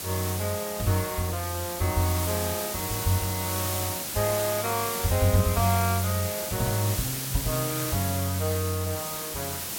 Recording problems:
hiss; slope -1 dB per octave, SNR 3 dB

